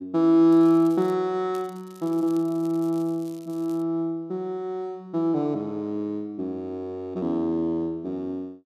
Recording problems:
crackle; at 0.5 s, at 1.5 s and from 2 to 4 s; loose cable, SNR 27 dB

